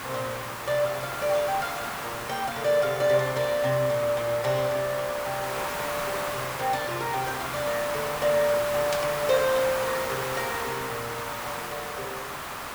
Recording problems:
hiss; SNR 5 dB
burst of static; at 9 s; peak +1 dB vs average level

